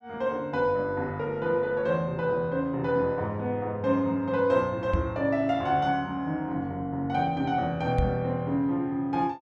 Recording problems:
knock on the microphone; at 5 s and at 8 s; peak +4 dB vs average level

